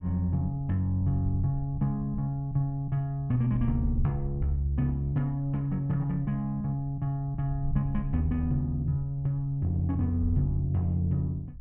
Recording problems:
wind noise; below 66 Hz, SNR 12 dB

